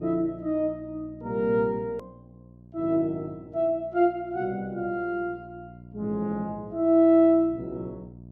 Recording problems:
hum; 60 Hz, harmonics up to 660 Hz, SNR 22 dB
hard cut with a click; at 2 s

